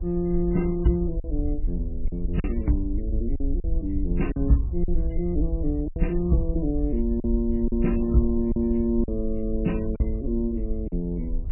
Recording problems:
lossy codec; MP3, log-spectral distance 2 dB, nothing above 2.8 kHz
rumble; below 56 Hz, SNR 4 dB
wind on the microphone; below 280 Hz, SNR 21 dB
packet loss; 5% of the sound replaced, filled with silence

